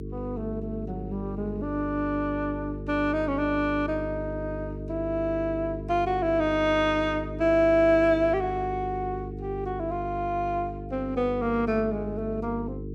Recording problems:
hum; 50 Hz, harmonics up to 450 Hz, SNR 9 dB

